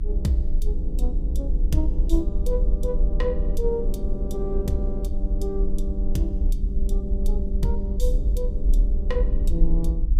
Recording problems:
mains hum; 60 Hz, harmonics up to 300 Hz, SNR 11 dB
rumble; below 46 Hz, SNR -4 dB

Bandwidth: 15.5 kHz